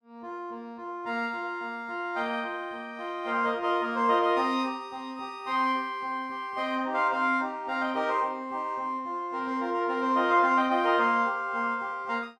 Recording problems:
none

